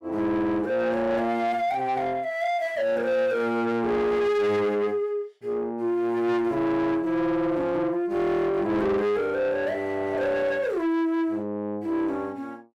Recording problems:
distortion; soft clipping, signal-to-distortion ratio 10 dB

